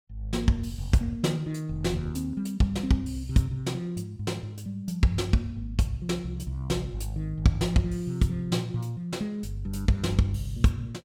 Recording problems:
none

